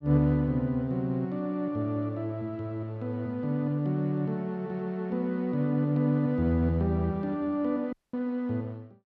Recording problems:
audio cutting out; at 8 s

